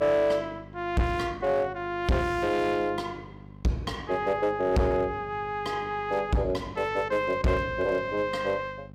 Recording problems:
distortion; hard clipping, signal-to-distortion ratio 7 dB
hum; 50 Hz, harmonics up to 1.1 kHz, SNR 19 dB

